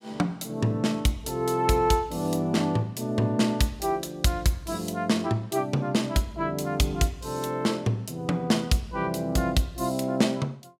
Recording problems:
none

